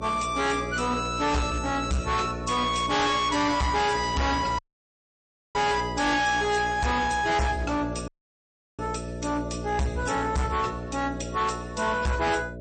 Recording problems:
lossy compression; MP3, log-spectral distance 4 dB, nothing above 8.2 kHz
distortion; hard clipping, signal-to-distortion ratio 6 dB
hum; 60 Hz, harmonics up to 660 Hz, SNR 10 dB
audio cutting out; at 4.5 s for 1 s and at 8 s for 0.5 s

